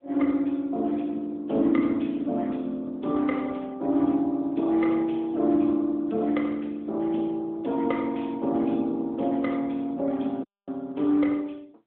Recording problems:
phone line; 190 Hz to 3.6 kHz, AMR-NB
audio cutting out; at 10 s

